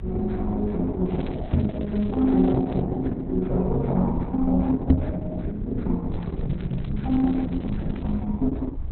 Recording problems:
lossy codec; Opus, log-spectral distance 2 dB, nothing above 4.1 kHz
low-frequency rumble; below 70 Hz, SNR 9 dB
crackle; from 1 to 3 s and from 6 to 8 s; loose cable, SNR 25 dB
microphone bump; at 1.5 s and at 5 s; peak +10 dB vs average level

